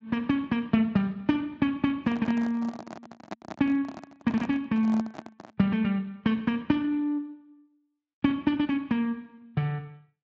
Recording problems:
lossy compression; Speex, log-spectral distance 2 dB
microphone handling noise; from 2 to 5.5 s; peak -4 dB vs average level

